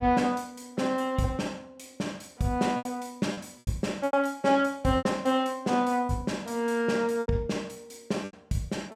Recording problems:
lost packets; 7% of the sound replaced, filled with repeated pitch periods

